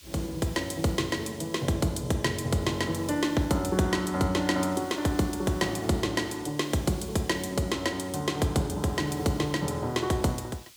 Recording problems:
hiss; slope +3 dB per octave, SNR 22 dB

